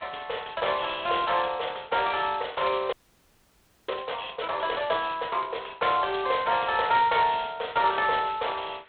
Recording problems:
telephone audio; 370 Hz to 3.7 kHz, G.726
hiss; SNR 30 dB
frozen audio; at 3 s for 1 s

